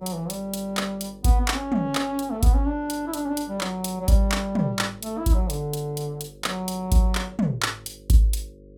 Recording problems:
mains hum; 50 Hz, harmonics up to 550 Hz, SNR 24 dB

